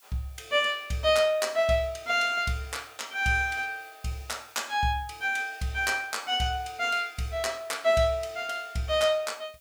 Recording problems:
hiss; slope +5 dB per octave, SNR 28 dB

